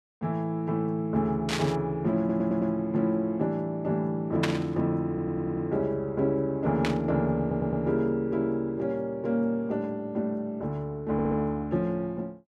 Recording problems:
static burst; at 1.5 s, at 4.5 s and at 7 s; peak +4 dB vs average level
stutter; 4 times, first at 2 s

